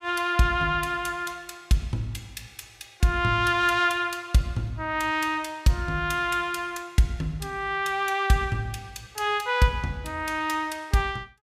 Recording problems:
none

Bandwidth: 15.5 kHz